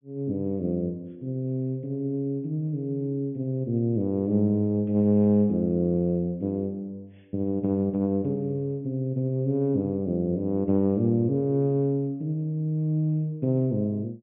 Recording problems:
low-pass filter; nothing above 3.5 kHz

